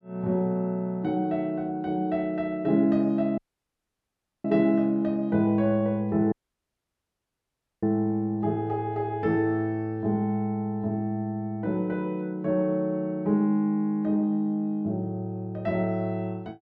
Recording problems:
dropout; at 3.5 s for 1 s and at 6.5 s for 1.5 s

